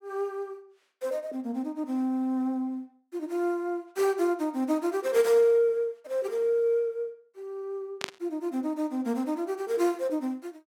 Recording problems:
static burst; at 8 s; peak +2 dB vs average level

